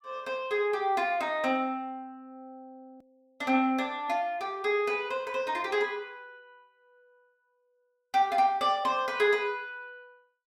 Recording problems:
click at an edit; at 3 s

